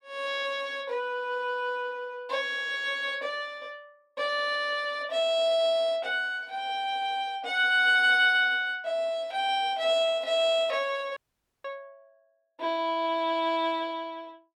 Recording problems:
audio cutting out; at 11 s

